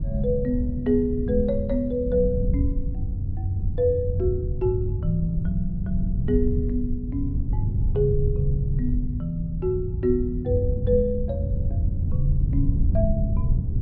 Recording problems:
treble cut off; nothing above 5.5 kHz
rumble; below 100 Hz, SNR 1 dB

